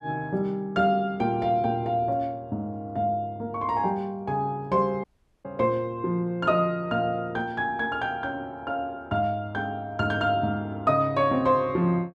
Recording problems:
dropout; at 5 s

